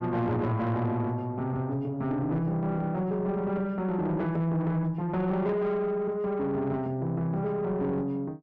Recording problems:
distorted audio; soft clipping, signal-to-distortion ratio 12 dB

